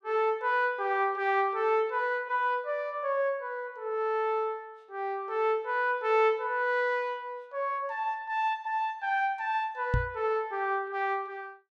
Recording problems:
knock on the microphone; at 10 s; peak +4 dB vs average level

